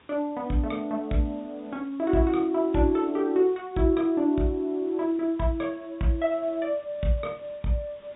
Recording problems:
treble missing; nothing above 4 kHz
hiss; SNR 30 dB

